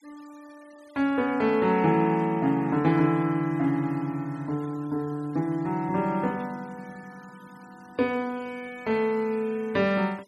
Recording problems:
noise reduction artefacts; signal-to-artefact ratio 27 dB

